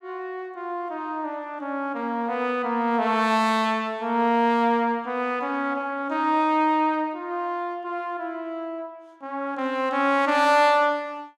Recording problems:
none

